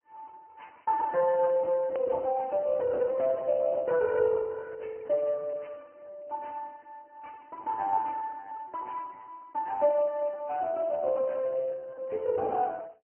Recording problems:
telephone audio; 150 Hz to 2.1 kHz, Speex
hard cut with a click; at 2 s

